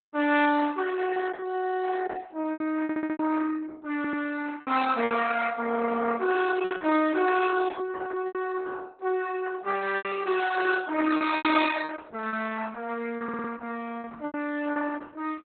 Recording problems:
lossy compression; Opus, log-spectral distance 4 dB, nothing above 4 kHz
lost packets; 7% of the sound replaced, filled with repeated pitch periods
stutter; at 3 s, at 4 s and at 13 s

